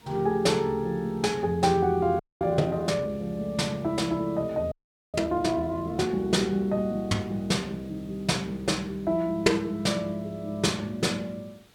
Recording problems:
hiss; slope -3 dB per octave, SNR 28 dB
audio freezing; at 2 s and at 4.5 s

